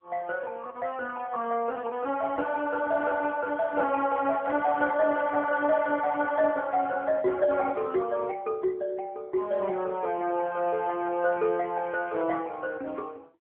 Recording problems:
telephone audio; 240 Hz to 2 kHz, AMR-NB

